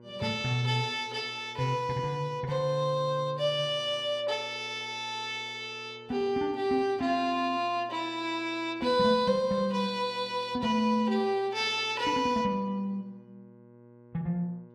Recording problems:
electrical hum; 60 Hz, harmonics up to 1.6 kHz, SNR 24 dB

